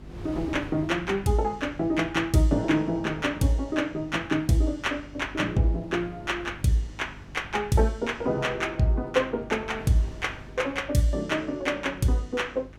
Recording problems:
hum; 50 Hz, harmonics up to 400 Hz, SNR 21 dB
wind noise; below 340 Hz, SNR 20 dB

